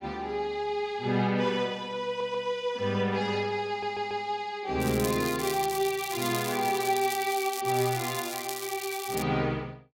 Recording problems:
stutter; at 2 s and at 3.5 s
crackle; from 5 to 7.5 s and from 7.5 to 9 s; loose cable, SNR 8 dB

